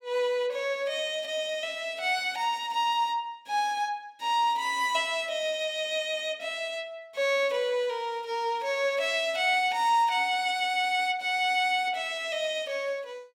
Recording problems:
none

